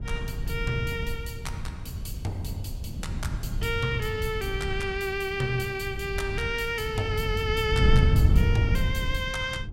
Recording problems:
wind on the microphone; below 130 Hz, SNR 0 dB

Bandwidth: 16 kHz